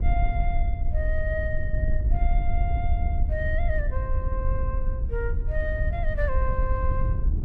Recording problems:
wind noise; below 68 Hz, SNR -6 dB

